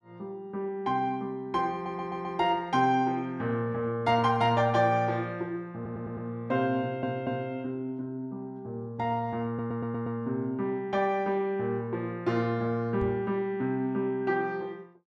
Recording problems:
audio stuttering; 4 times, first at 1.5 s
microphone thump; at 13 s; peak -3 dB vs average level

